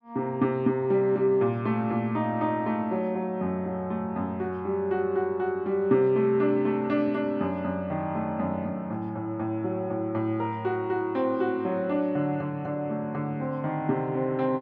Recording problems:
none

